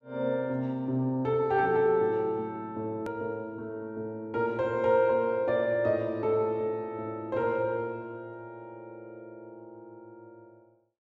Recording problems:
edit click; at 3 s

